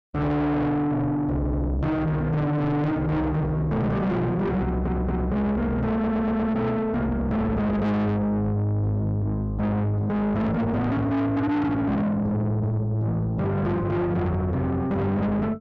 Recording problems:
distortion; soft clipping, signal-to-distortion ratio 7 dB
audio stuttering; at 1.5 s, at 4.5 s and at 6 s

